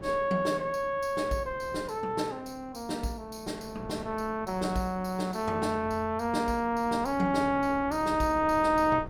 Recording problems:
wind on the microphone; below 430 Hz, SNR 18 dB

